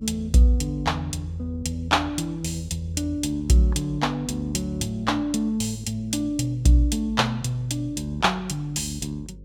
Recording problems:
hum; 50 Hz, harmonics up to 550 Hz, SNR 20 dB

